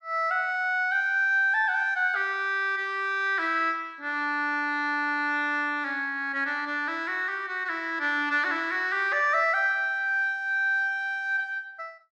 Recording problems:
none

